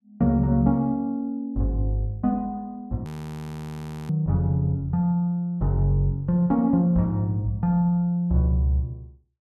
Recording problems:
audio freezing; at 3 s for 1 s

